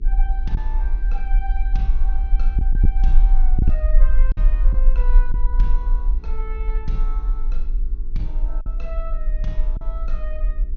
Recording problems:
treble cut off; nothing above 6.7 kHz
hum; 60 Hz, harmonics up to 420 Hz, SNR 10 dB
low-frequency rumble; below 38 Hz, strongest tone 24 Hz, SNR -14 dB
packet loss; 3% of the sound replaced, filled with silence

